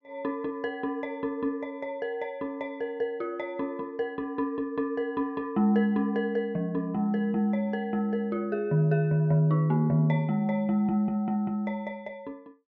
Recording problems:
none

